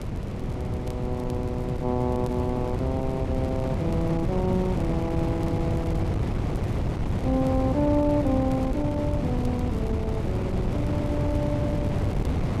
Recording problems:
wind noise; below 280 Hz, SNR -1 dB
crackle; vinyl, SNR 27 dB

